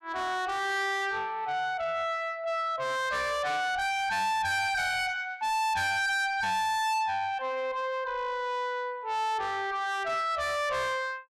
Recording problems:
distortion; soft clipping, signal-to-distortion ratio 6 dB

